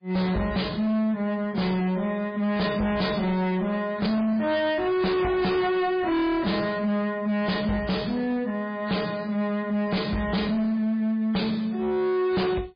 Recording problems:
lossy compression; MP3, log-spectral distance 3 dB, nothing above 4.6 kHz
distortion; hard clipping, signal-to-distortion ratio 7 dB

